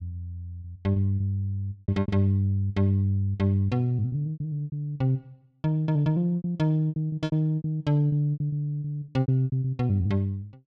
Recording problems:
lost packets; 13% of the sound replaced, filled with repeated pitch periods

